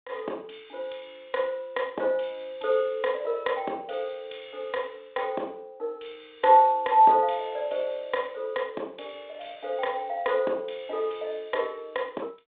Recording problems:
phone line; 320 Hz to 3.6 kHz, G.726

